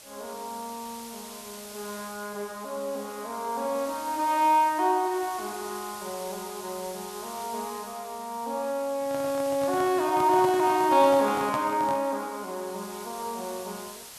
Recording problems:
hiss; slope 0 dB per octave, SNR 15 dB
microphone handling noise; from 9 to 12 s; peak -2 dB vs average level

